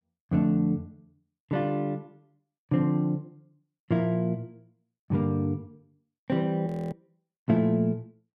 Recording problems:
audio freezing; at 6.5 s

